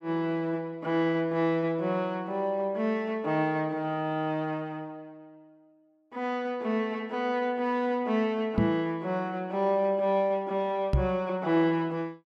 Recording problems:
microphone thump; at 8.5 s and at 11 s; peak +7 dB vs average level

